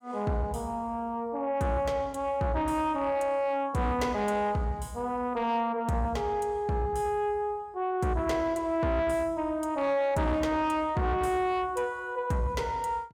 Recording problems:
distorted audio; soft clipping, signal-to-distortion ratio 11 dB

